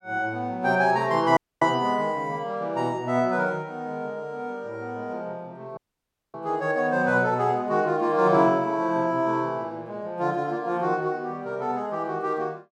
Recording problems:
dropout; at 1.5 s and at 6 s for 0.5 s

